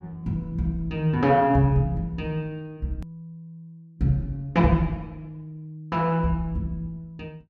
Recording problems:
click at an edit; at 3 s

